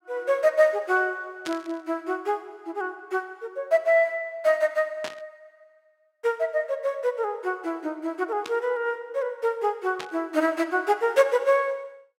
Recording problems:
static burst; 4 times, first at 1.5 s; peak -5 dB vs average level

